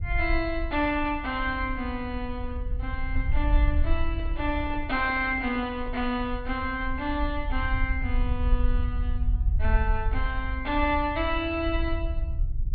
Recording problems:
treble cut off; nothing above 4.7 kHz
low-frequency rumble; below 64 Hz, SNR 2 dB
microphone handling noise; from 4 to 6 s; peak -13 dB vs average level

